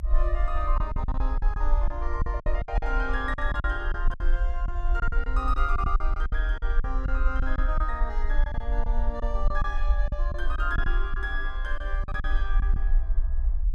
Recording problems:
rumble; below 46 Hz, strongest tone 22 Hz, SNR -4 dB
lost packets; 11% of the sound replaced, filled with silence

